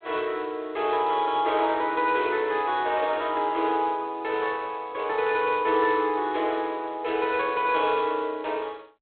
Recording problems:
phone line; 280 Hz to 3.9 kHz, G.726

